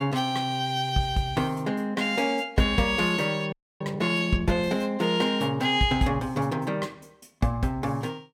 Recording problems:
audio freezing; at 3.5 s

